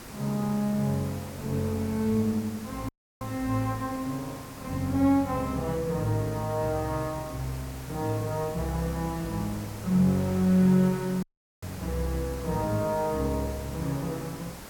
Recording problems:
background hiss; slope -4 dB per octave, SNR 15 dB
wind noise; below 1.8 kHz, SNR 24 dB
audio cutting out; at 3 s and at 11 s

